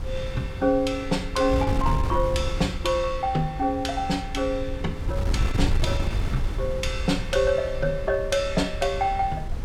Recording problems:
wind noise; below 98 Hz, SNR 5 dB

